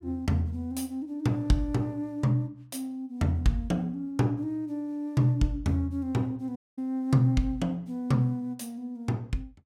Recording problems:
audio cutting out; at 6.5 s

